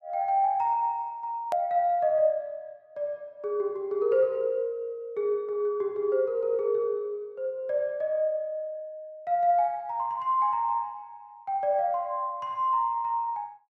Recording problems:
edit click; at 1.5 s

